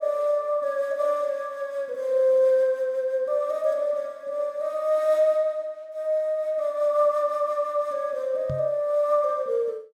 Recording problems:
microphone bump; at 8.5 s; peak -4 dB vs average level

